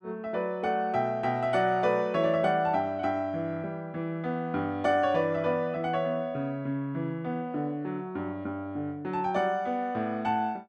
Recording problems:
none

